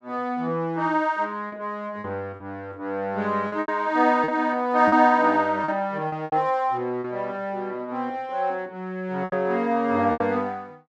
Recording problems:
lost packets; 6% of the sound replaced, filled with repeated pitch periods

